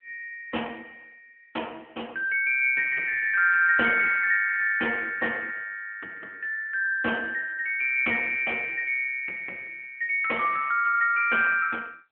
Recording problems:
phone line; 280 Hz to 3.1 kHz, AMR-NB

